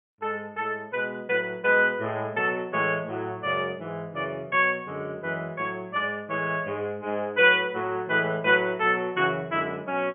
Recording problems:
treble missing; nothing above 3.3 kHz

